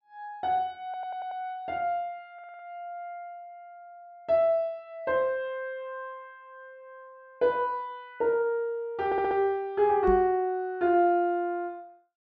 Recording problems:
stutter; at 1 s, at 2.5 s and at 9 s
microphone bump; at 10 s; peak -2 dB vs average level

